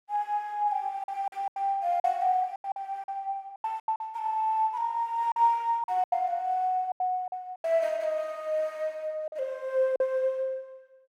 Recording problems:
packet loss; 9% of the sound replaced, filled with silence

